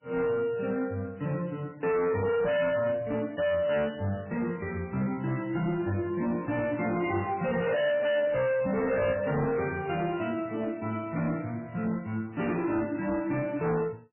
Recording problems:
codec artefacts; MP3, log-spectral distance 3 dB, nothing above 2.4 kHz
distortion; hard clipping, signal-to-distortion ratio 8 dB

